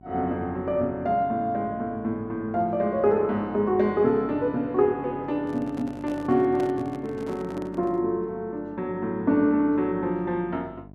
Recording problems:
hum; 50 Hz, harmonics up to 1.1 kHz, SNR 22 dB
handling noise; from 5.5 to 8 s; peak -8 dB vs average level

